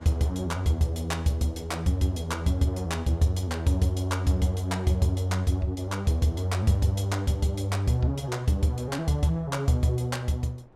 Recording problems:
wind on the microphone; below 620 Hz, SNR 28 dB

